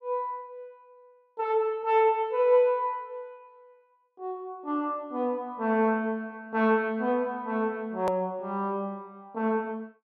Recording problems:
hard cut with a click; at 8 s

